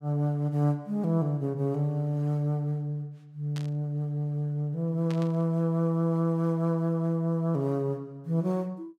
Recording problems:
static burst; at 3.5 s and at 5 s; peak -10 dB vs average level

